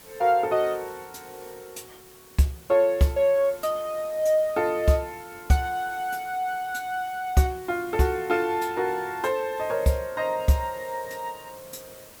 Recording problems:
background hiss; slope -3 dB per octave, SNR 21 dB

